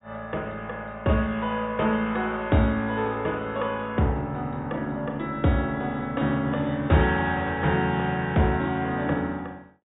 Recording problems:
low-pass filter; nothing above 4 kHz

